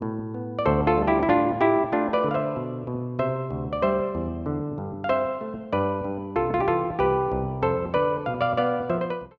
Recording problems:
none

